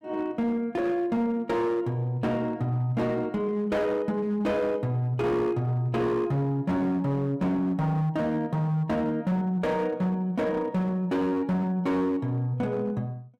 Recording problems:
distorted audio; hard clipping, signal-to-distortion ratio 12 dB

